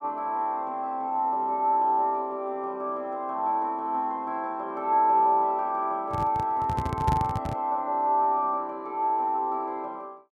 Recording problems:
microphone handling noise; from 6 to 7.5 s; peak +4 dB vs average level

